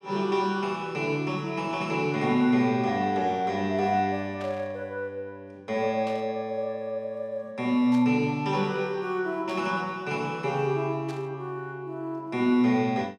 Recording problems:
burst of static; 5 times, first at 4.5 s; peak -12 dB vs average level

